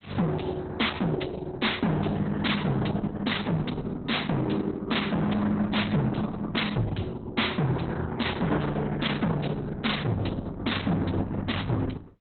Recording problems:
codec artefacts; Opus, log-spectral distance 6 dB, nothing above 4.1 kHz
distorted audio; hard clipping, signal-to-distortion ratio 6 dB

